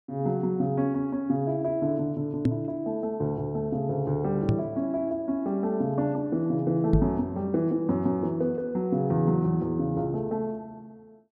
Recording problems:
microphone thump; at 2.5 s, at 4.5 s and at 7 s; peak +7 dB vs average level

